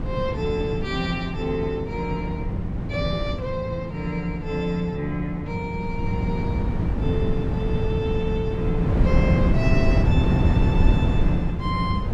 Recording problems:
wind noise; below 180 Hz, SNR -3 dB

